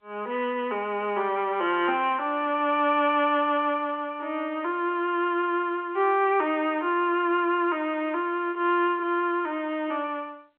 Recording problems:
telephone audio; 280 Hz to 3.4 kHz, G.711

